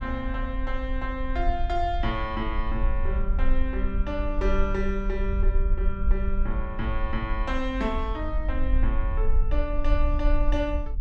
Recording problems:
low-frequency rumble; below 48 Hz, strongest tone 20 Hz, SNR -2 dB

